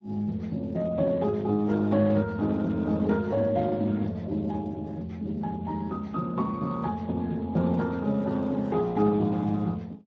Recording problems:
lossy compression; Speex, log-spectral distance 2 dB

